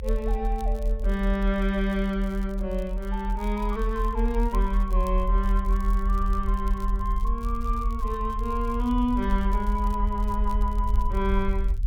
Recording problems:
low-frequency rumble; below 46 Hz, strongest tone 44 Hz, SNR 0 dB
crackle; vinyl, SNR 25 dB

